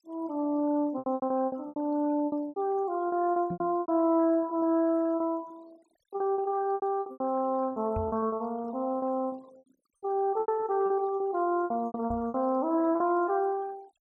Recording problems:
denoising artefacts; signal-to-artefact ratio 26 dB
packet loss; 14% of the sound replaced, filled with repeated pitch periods
knock on the microphone; at 3.5 s, at 8 s and at 12 s; peak -3 dB vs average level

